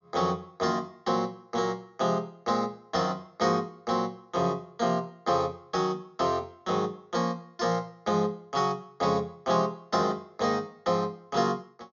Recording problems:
treble missing; nothing above 7.2 kHz

